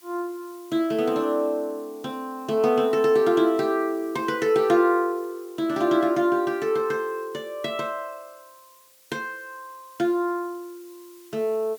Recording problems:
hiss; slope +2 dB per octave, SNR 27 dB

